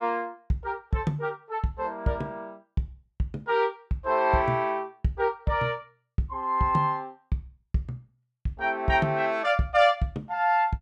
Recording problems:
none

